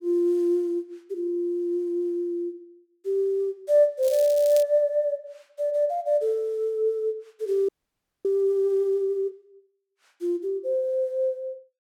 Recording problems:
crackle; at 4 s; loose cable, SNR 15 dB
audio freezing; at 7.5 s for 0.5 s

